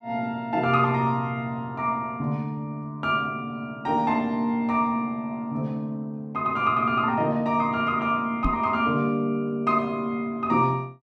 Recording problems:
knock on the microphone; at 8.5 s; peak +3 dB vs average level

